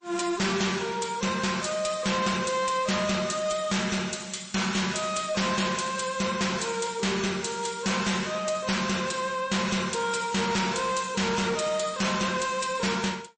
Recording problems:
lossy compression; MP3, log-spectral distance 6 dB, nothing above 8.2 kHz
distortion; soft clipping, signal-to-distortion ratio 7 dB

